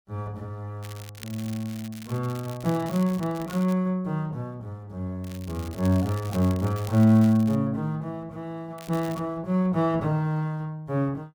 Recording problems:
crackle; from 1 to 3.5 s, from 5 to 7.5 s and at 9 s; loose cable, SNR 19 dB

